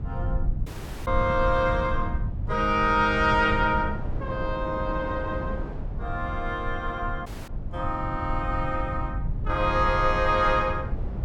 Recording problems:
rumble; below 100 Hz, SNR 7 dB
wind on the microphone; below 570 Hz, SNR 16 dB
dropout; at 0.5 s and at 7.5 s

